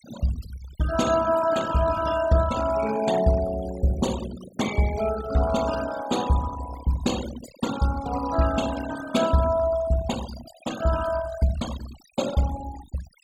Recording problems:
noise reduction artefacts; signal-to-artefact ratio 12 dB

